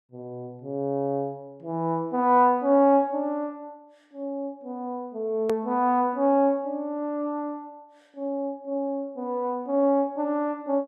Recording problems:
click at an edit; at 5.5 s

